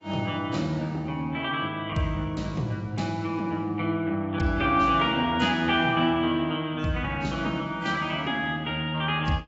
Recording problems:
lossy codec; AAC, log-spectral distance 2 dB, nothing above 7.6 kHz

